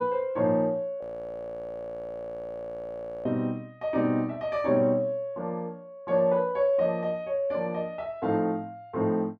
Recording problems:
audio freezing; at 1 s for 2 s

